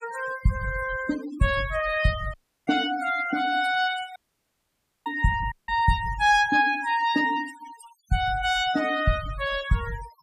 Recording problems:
denoising artefacts; signal-to-artefact ratio 15 dB
dropout; at 2.5 s, at 4 s for 1 s and at 5.5 s

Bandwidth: 15 kHz